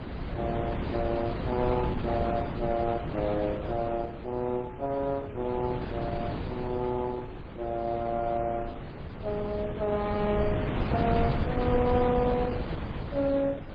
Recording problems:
lossy compression; MP3, then Opus, log-spectral distance 3 dB
wind on the microphone; below 430 Hz, SNR 4 dB

